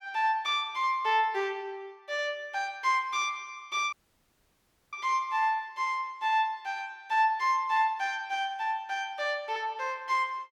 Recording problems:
dropout; at 4 s for 1 s

